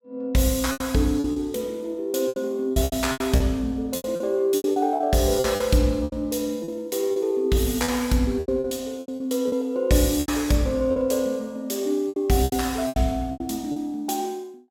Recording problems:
packet loss; 12% of the sound replaced, filled with repeated pitch periods

